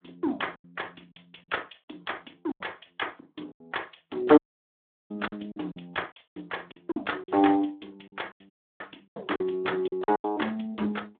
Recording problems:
telephone audio; 240 Hz to 3.6 kHz, Speex
lost packets; 11% of the sound replaced, filled with silence
audio cutting out; at 4.5 s for 0.5 s and at 8.5 s

